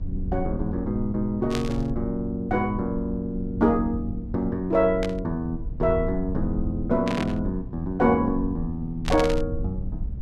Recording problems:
hum; 60 Hz, harmonics up to 720 Hz, SNR 21 dB
low-frequency rumble; below 80 Hz, SNR 10 dB
static burst; 4 times, first at 1.5 s; peak -1 dB vs average level

